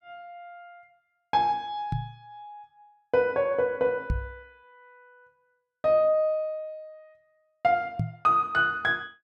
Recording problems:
knock on the microphone; at 2 s, at 4 s and at 8 s; peak +1 dB vs average level

